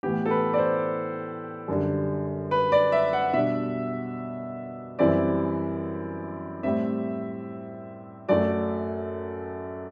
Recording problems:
none

